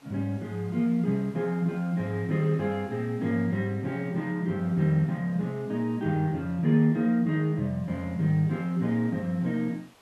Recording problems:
hiss; SNR 29 dB

